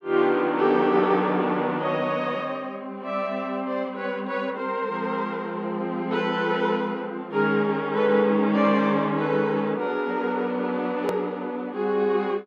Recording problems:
hard cut with a click; at 11 s

